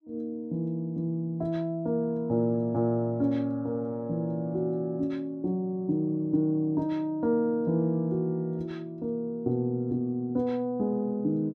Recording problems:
none

